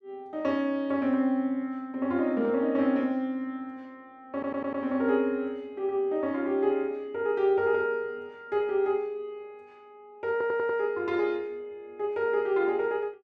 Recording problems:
stutter; at 4.5 s and at 10 s

